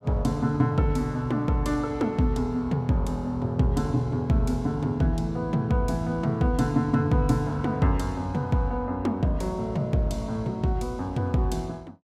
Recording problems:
none

